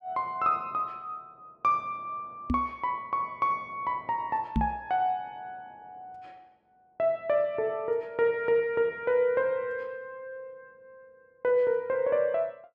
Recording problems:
microphone thump; at 2.5 s and at 4.5 s; peak +5 dB vs average level

